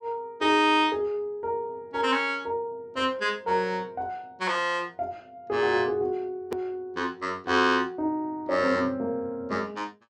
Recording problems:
edit click; at 6.5 s

